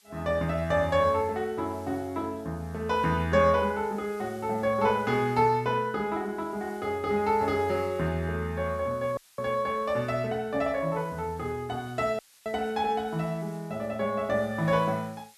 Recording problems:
background hiss; slope +3 dB per octave, SNR 27 dB
dropout; at 9 s and at 12 s

